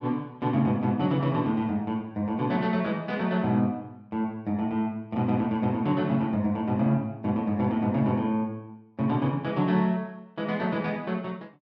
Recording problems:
none

